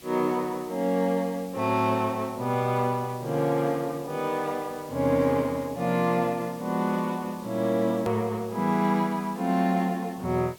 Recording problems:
background hiss; SNR 22 dB
hard cut with a click; at 8 s

